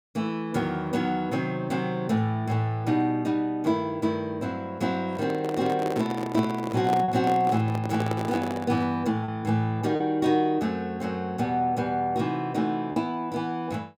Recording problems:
packet loss; 1.2% of the sound replaced, filled with repeated pitch periods
handling noise; from 5 to 9 s; peak -1 dB vs average level

